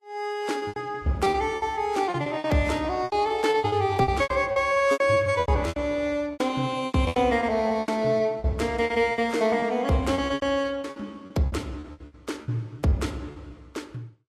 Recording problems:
lossy compression; Vorbis, log-spectral distance 2 dB, nothing above 13.5 kHz
packet loss; 18% of the sound replaced, filled with repeated pitch periods

